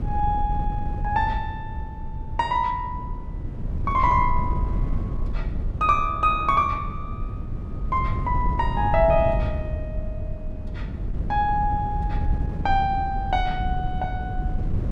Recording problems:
wind on the microphone; below 110 Hz, SNR 5 dB

